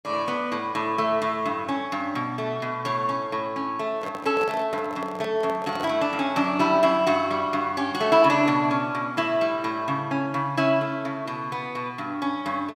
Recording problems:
microphone handling noise; from 4 to 6 s; peak -6 dB vs average level

